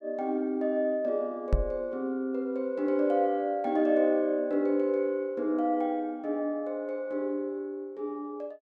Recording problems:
knock on the microphone; at 1.5 s; peak +6 dB vs average level

